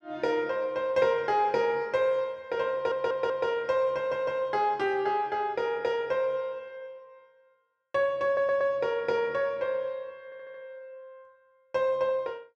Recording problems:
audio stuttering; 4 times, first at 2.5 s

